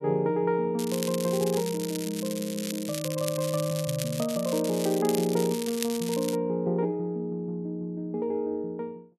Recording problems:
crackling; from 1 to 6.5 s; loose cable, SNR 8 dB

